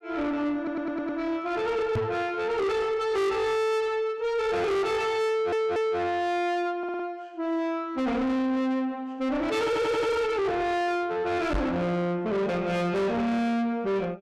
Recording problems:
distortion; soft clipping, signal-to-distortion ratio 7 dB
stutter; 4 times, first at 0.5 s
microphone bump; at 2 s and at 12 s; peak +2 dB vs average level

